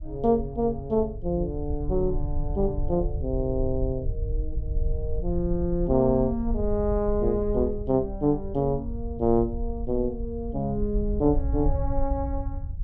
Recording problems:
rumble; below 66 Hz, SNR 6 dB

